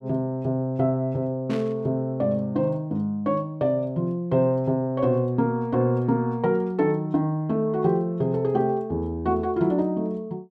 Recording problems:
static burst; at 1.5 s; peak -10 dB vs average level

